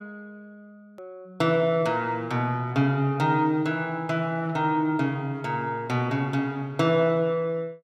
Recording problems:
hard cut with a click; at 1 s

